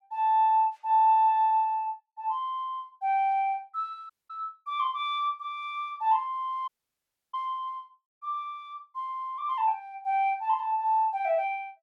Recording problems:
audio cutting out; at 4 s and at 6.5 s for 0.5 s

